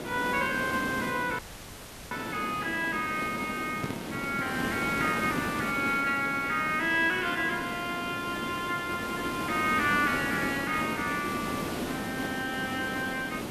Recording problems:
hiss; slope -6 dB per octave, SNR 5 dB
dropout; at 1.5 s for 0.5 s
microphone handling noise; from 3.5 to 5.5 s; peak -1 dB vs average level

